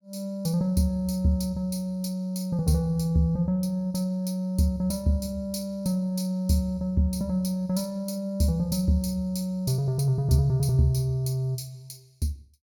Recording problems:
none

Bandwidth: 18 kHz